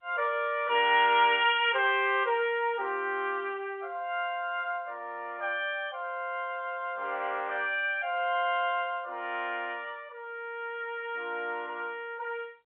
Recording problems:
telephone audio; 260 Hz to 3.5 kHz, G.711

